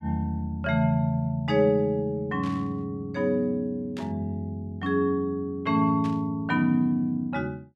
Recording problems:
burst of static; at 2.5 s, at 4 s and at 6 s; peak -12 dB vs average level

